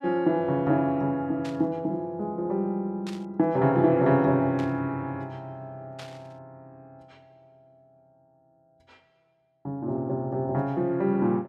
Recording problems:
static burst; 4 times, first at 1.5 s; peak -11 dB vs average level

